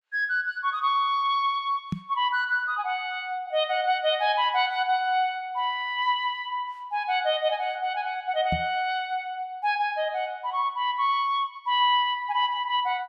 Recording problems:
microphone thump; at 2 s and at 8.5 s; peak +1 dB vs average level

